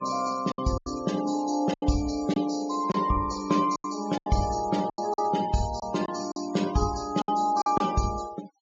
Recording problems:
low-pass filter; nothing above 8 kHz
denoising artefacts; signal-to-artefact ratio 16 dB
packet loss; 9% of the sound replaced, filled with silence

